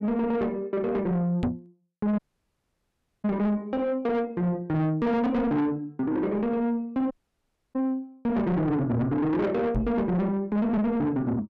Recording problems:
distorted audio; soft clipping, signal-to-distortion ratio 8 dB
knock on the microphone; at 1.5 s and at 10 s; peak +4 dB vs average level
dropout; at 2 s for 1 s and at 7 s for 0.5 s

